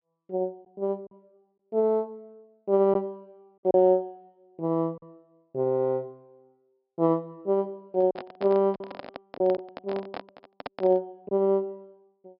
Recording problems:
low-pass filter; nothing above 5.5 kHz
lost packets; 3% of the sound replaced, filled with silence
handling noise; from 8 to 11 s; peak -5 dB vs average level

